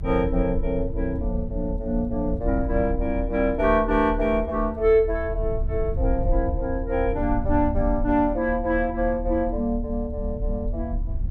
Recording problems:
low-frequency rumble; below 76 Hz, strongest tone 36 Hz, SNR 6 dB

